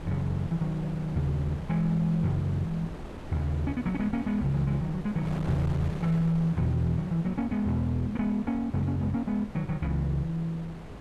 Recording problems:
wind noise; below 500 Hz, SNR 12 dB

